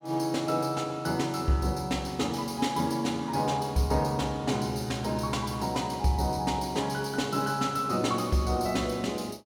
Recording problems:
none

